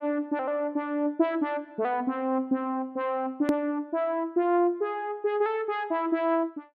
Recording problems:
click at an edit; at 3.5 s

